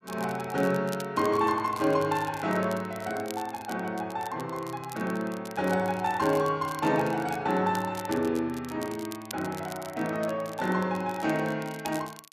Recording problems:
crackling; vinyl, SNR 18 dB

